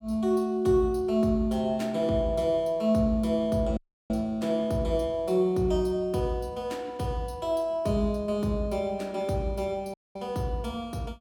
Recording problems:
dropout; at 4 s and at 10 s

